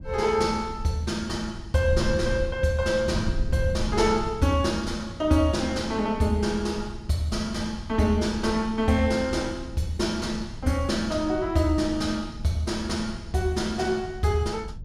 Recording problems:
wind on the microphone; below 110 Hz, SNR 11 dB

